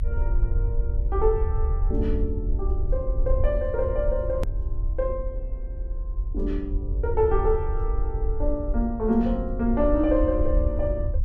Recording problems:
low-frequency rumble; below 62 Hz, SNR 2 dB
click at an edit; at 4.5 s

